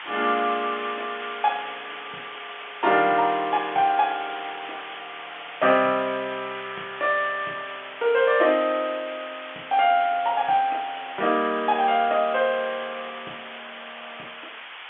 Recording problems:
phone line; 280 Hz to 3.4 kHz, G.711
background hiss; SNR 13 dB

